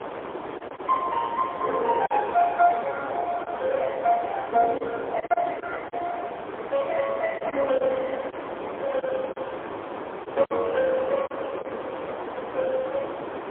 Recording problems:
phone line; 320 Hz to 2.8 kHz, AMR-NB, then MP3
hiss; SNR 8 dB
lost packets; 4% of the sound replaced, filled with silence

